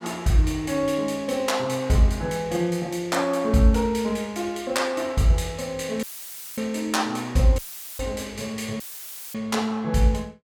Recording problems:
audio cutting out; at 6 s for 0.5 s, at 7.5 s and at 9 s for 0.5 s; filled with static

